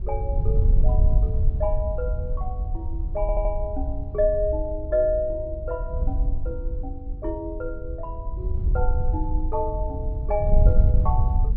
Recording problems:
treble cut off; nothing above 6.6 kHz
wind on the microphone; below 68 Hz, SNR -3 dB
audio stuttering; at 3 s

